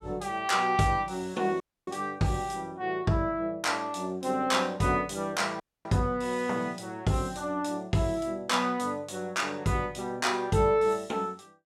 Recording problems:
dropout; at 1.5 s and at 5.5 s

